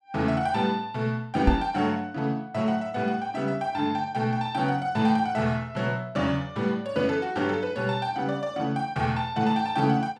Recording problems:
microphone bump; at 1.5 s; peak +8 dB vs average level

